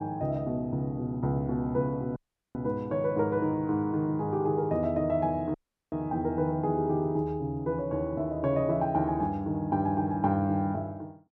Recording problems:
dropout; at 2 s and at 5.5 s

